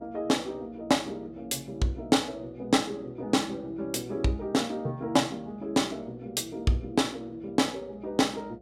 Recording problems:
electrical hum; 60 Hz, harmonics up to 720 Hz, SNR 26 dB

